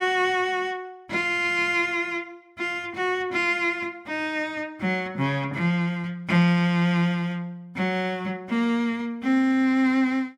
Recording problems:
none

